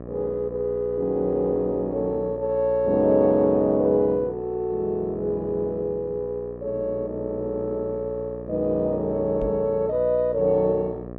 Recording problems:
hum; 60 Hz, harmonics up to 1.3 kHz, SNR 14 dB
knock on the microphone; at 9.5 s; peak -3 dB vs average level

